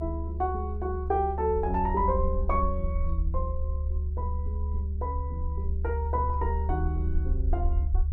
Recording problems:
low-frequency rumble; below 74 Hz, strongest tone 74 Hz, SNR -1 dB

